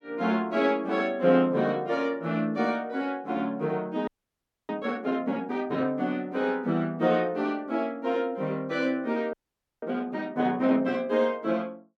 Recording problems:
frozen audio; at 4 s for 0.5 s and at 9.5 s

